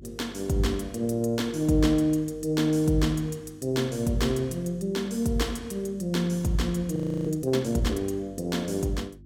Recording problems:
hum; 50 Hz, harmonics up to 350 Hz, SNR 22 dB
audio freezing; at 7 s

